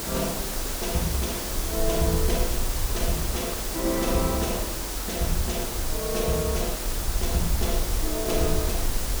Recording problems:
hiss; SNR 0 dB
rumble; below 56 Hz, SNR 5 dB

